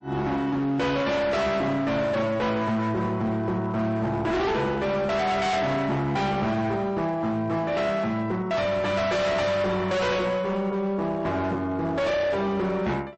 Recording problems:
lossy compression; MP3, log-spectral distance 2 dB, nothing above 8 kHz
distortion; hard clipping, signal-to-distortion ratio 7 dB

